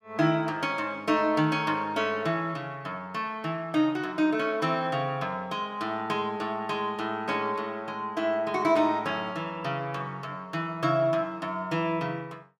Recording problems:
none

